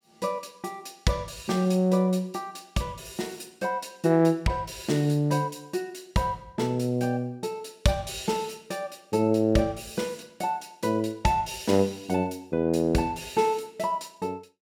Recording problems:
none

